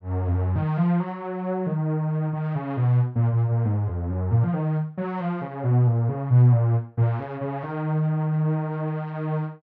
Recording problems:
none

